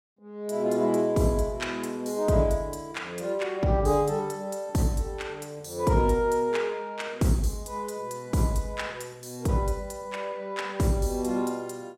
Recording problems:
none

